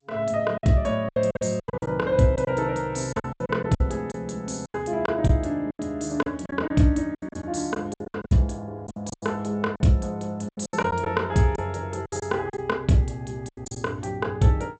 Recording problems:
lossy codec; G.722, log-spectral distance 3 dB, nothing above 8 kHz
lost packets; 13% of the sound replaced, filled with silence

